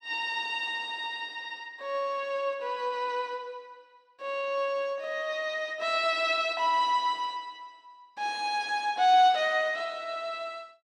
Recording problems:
none

